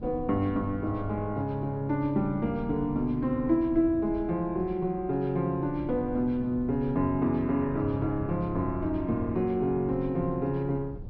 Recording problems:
low-pass filter; nothing above 5.5 kHz
wind on the microphone; below 130 Hz, SNR 15 dB

